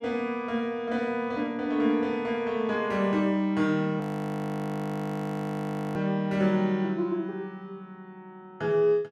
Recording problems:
audio freezing; at 4 s for 2 s

